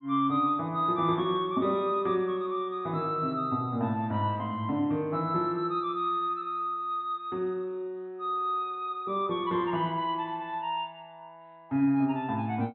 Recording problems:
treble cut off; nothing above 4.1 kHz

